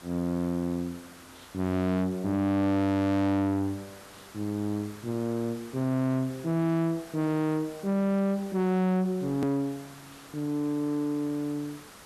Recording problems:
distorted audio; soft clipping, signal-to-distortion ratio 7 dB
hiss; SNR 20 dB
hard cut with a click; at 9.5 s

